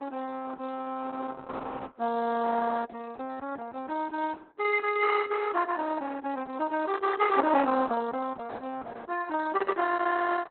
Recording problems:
codec artefacts; Opus, log-spectral distance 5 dB, nothing above 4.1 kHz

